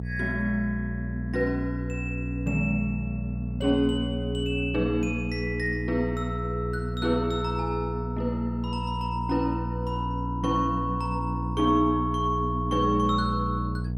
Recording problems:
hum; 60 Hz, harmonics up to 480 Hz, SNR 4 dB

